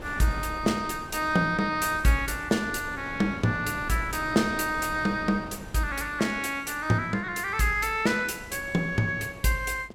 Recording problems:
wind noise; below 620 Hz, SNR 15 dB

